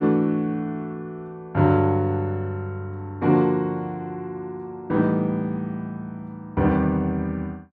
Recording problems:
none

